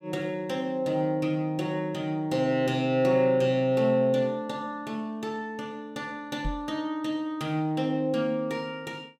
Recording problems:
knock on the microphone; at 6.5 s; peak -2 dB vs average level

